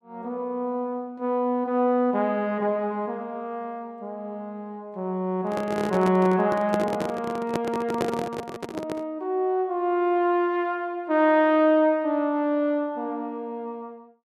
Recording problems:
microphone handling noise; from 5.5 to 9 s; peak +2 dB vs average level

